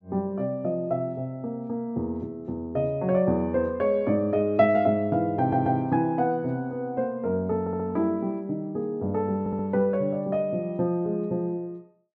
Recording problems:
audio stuttering; at 5.5 s, at 7.5 s and at 9.5 s

